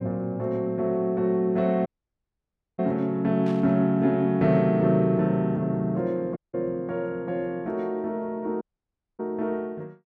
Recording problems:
audio cutting out; at 2 s for 1 s, at 6.5 s and at 8.5 s for 0.5 s
static burst; at 3.5 s; peak -15 dB vs average level

